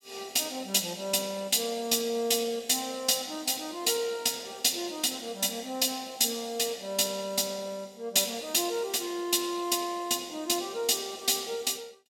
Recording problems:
none

